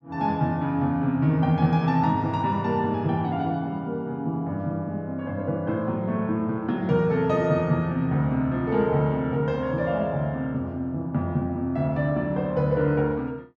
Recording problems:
none

